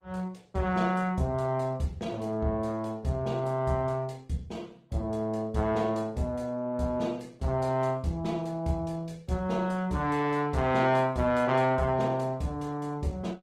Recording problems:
codec artefacts; Opus, log-spectral distance 2 dB, nothing above 17.1 kHz

